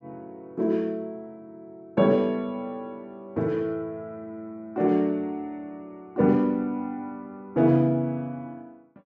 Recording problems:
low-pass filter; nothing above 7.8 kHz

